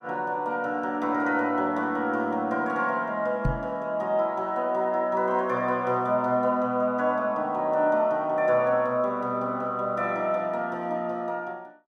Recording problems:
microphone thump; at 3.5 s; peak +3 dB vs average level

